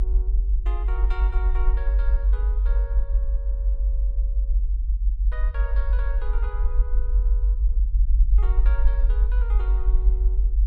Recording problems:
rumble; below 50 Hz, strongest tone 46 Hz, SNR -17 dB

